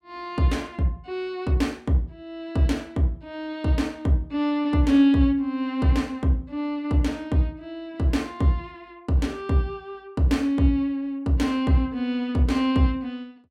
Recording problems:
none

